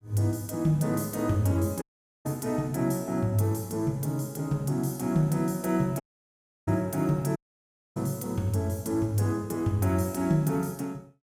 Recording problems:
audio cutting out; at 2 s, at 6 s for 0.5 s and at 7.5 s for 0.5 s

